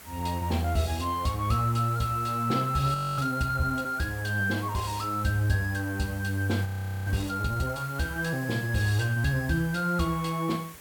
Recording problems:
background hiss; slope -2 dB per octave, SNR 18 dB
frozen audio; at 3 s and at 6.5 s

